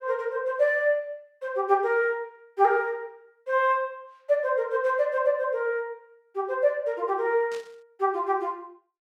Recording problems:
burst of static; at 7.5 s; peak -14 dB vs average level

